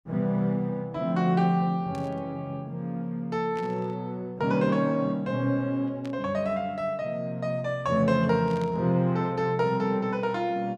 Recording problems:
burst of static; 4 times, first at 2 s; peak -14 dB vs average level

